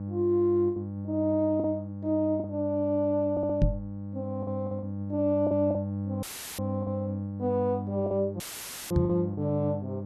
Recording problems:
hum; 50 Hz, harmonics up to 800 Hz, SNR 7 dB
packet loss; 7% of the sound replaced, filled with the last packet
audio stuttering; at 3.5 s
microphone bump; at 3.5 s and at 9 s; peak +8 dB vs average level
audio cutting out; at 6 s and at 8.5 s for 0.5 s; filled with static

